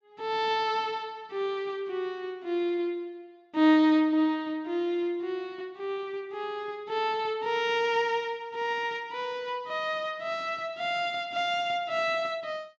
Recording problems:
none

